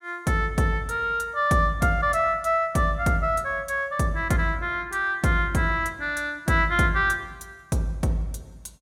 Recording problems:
none

